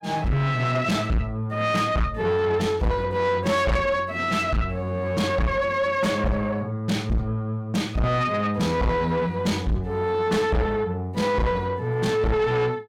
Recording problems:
distorted audio; soft clipping, signal-to-distortion ratio 6 dB

